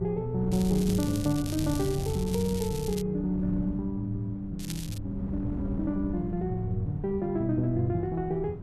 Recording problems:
hum; 60 Hz, harmonics up to 720 Hz, SNR 23 dB
wind on the microphone; below 160 Hz, SNR 9 dB
crackle; from 0.5 to 3 s and at 4.5 s; loose cable, SNR 12 dB

